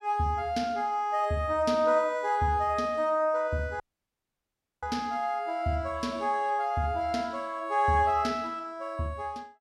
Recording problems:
dropout; at 4 s for 1 s

